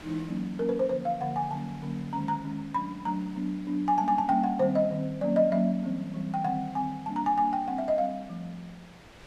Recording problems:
wind on the microphone; below 2.6 kHz, SNR 23 dB

